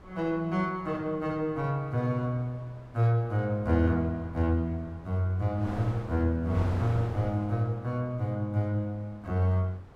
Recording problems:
wind on the microphone; below 750 Hz, SNR 16 dB

